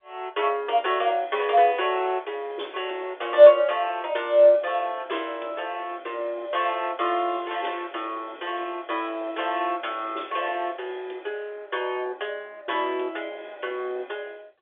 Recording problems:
telephone audio; 320 Hz to 3.6 kHz, G.711

